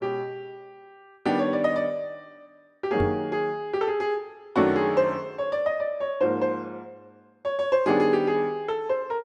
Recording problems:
microphone bump; at 3 s; peak +1 dB vs average level

